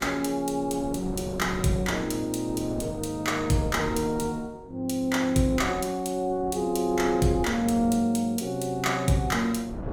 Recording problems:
wind on the microphone; below 390 Hz, SNR 14 dB

